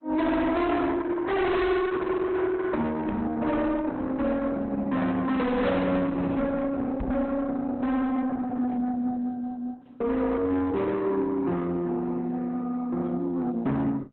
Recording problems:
lossy codec; Opus, log-spectral distance 2 dB, nothing above 4 kHz
distortion; soft clipping, signal-to-distortion ratio 7 dB
knock on the microphone; at 3 s and at 7 s; peak +3 dB vs average level

